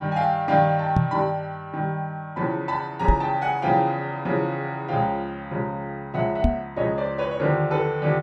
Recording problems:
microphone thump; at 1 s, at 3 s and at 6.5 s; peak +8 dB vs average level

